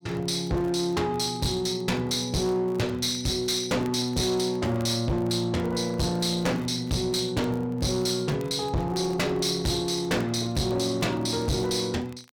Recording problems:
distorted audio; hard clipping, uneven, signal-to-distortion ratio 6 dB
crackling; vinyl, SNR 28 dB

